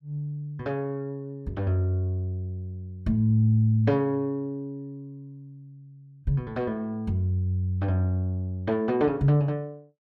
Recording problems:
none

